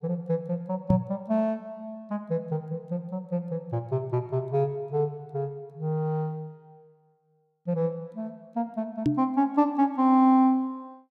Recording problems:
microphone thump; at 1 s and at 9 s; peak +7 dB vs average level

